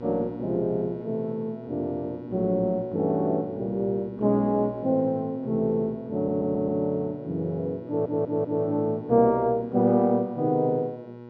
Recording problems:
hum; 60 Hz, harmonics up to 1.6 kHz, SNR 16 dB
stutter; at 6 s and at 8 s

